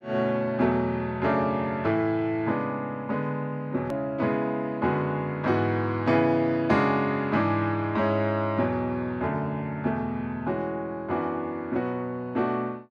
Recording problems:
click at an edit; at 4 s

